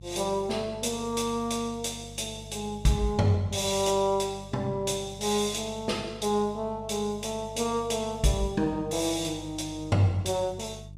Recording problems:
electrical hum; 50 Hz, harmonics up to 350 Hz, SNR 17 dB

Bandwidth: 14.5 kHz